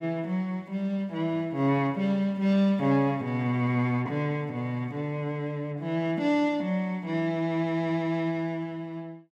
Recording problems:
none

